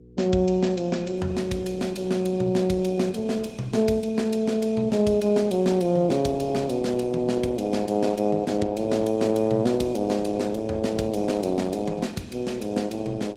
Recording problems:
codec artefacts; Opus, log-spectral distance 3 dB, nothing above 18.9 kHz
hum; 60 Hz, harmonics up to 480 Hz, SNR 24 dB

